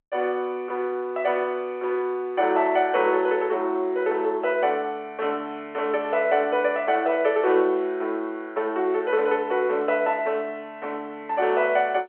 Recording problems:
phone line; 300 Hz to 3.6 kHz, G.711

